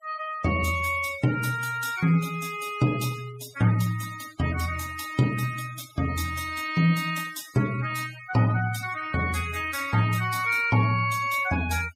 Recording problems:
denoising artefacts; signal-to-artefact ratio 16 dB

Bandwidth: 15.5 kHz